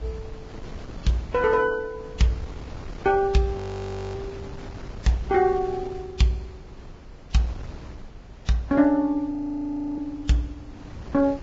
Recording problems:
codec artefacts; Vorbis, log-spectral distance 2 dB, nothing above 7.3 kHz
wind noise; below 330 Hz, SNR 15 dB
frozen audio; at 3.5 s for 0.5 s and at 9.5 s for 0.5 s

